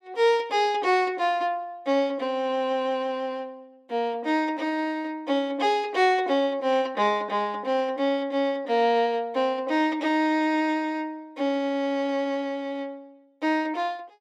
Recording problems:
none

